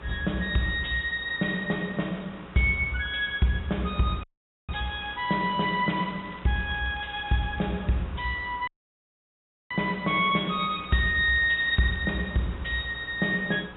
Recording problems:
treble cut off; nothing above 3.8 kHz
hum; 60 Hz, harmonics up to 540 Hz, SNR 24 dB
background hiss; SNR 19 dB
dropout; at 4 s and at 8.5 s for 1 s
crackling; from 5 to 7.5 s and from 10 to 12 s; loose cable, SNR 25 dB

